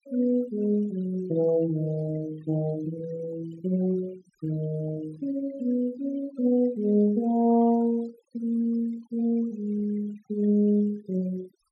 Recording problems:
denoising artefacts; signal-to-artefact ratio 24 dB

